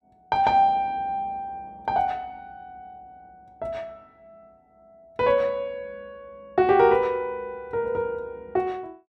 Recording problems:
none

